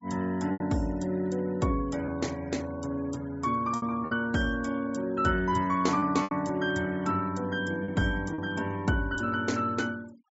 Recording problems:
treble cut off; nothing above 8 kHz
noise reduction artefacts; signal-to-artefact ratio 23 dB
packet loss; 4% of the sound replaced, filled with repeated pitch periods

